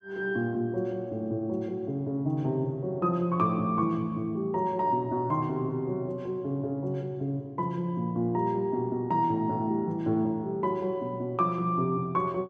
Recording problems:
none

